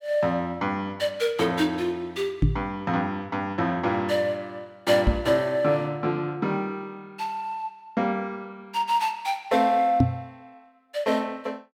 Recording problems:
microphone bump; at 2.5 s, at 5 s and at 10 s; peak +9 dB vs average level

